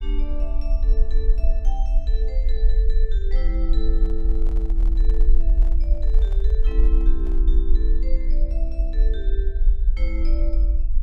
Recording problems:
rumble; below 44 Hz, strongest tone 20 Hz, SNR -13 dB
handling noise; from 4 to 7.5 s; peak -6 dB vs average level

